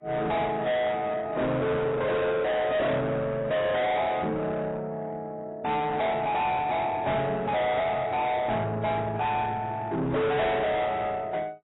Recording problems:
lossy codec; AAC, log-spectral distance 3 dB, nothing above 3.8 kHz
distortion; soft clipping, signal-to-distortion ratio 6 dB

